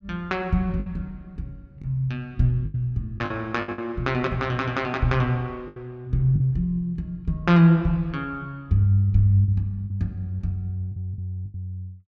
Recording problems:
packet loss; 6% of the sound replaced, filled with the last packet

